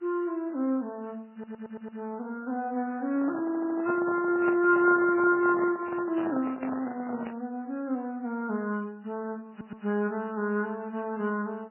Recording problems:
codec artefacts; MP3, then AAC, log-spectral distance 2 dB, nothing above 2.4 kHz
audio stuttering; at 1.5 s, at 3.5 s and at 9.5 s
handling noise; from 3 to 7.5 s; peak -3 dB vs average level

